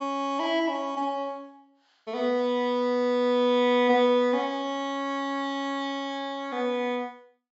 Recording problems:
low-pass filter; nothing above 8 kHz

